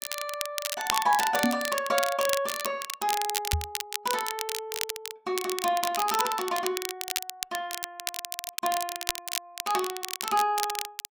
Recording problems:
crackle; vinyl, SNR 3 dB
microphone thump; at 1.5 s and at 3.5 s; peak +6 dB vs average level

